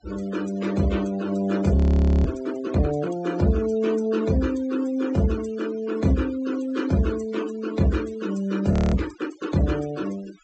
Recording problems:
treble cut off; nothing above 8 kHz
denoising artefacts; signal-to-artefact ratio 18 dB
frozen audio; at 2 s and at 8.5 s

